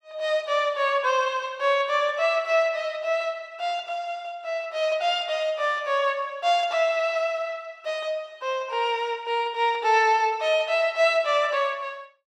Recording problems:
none

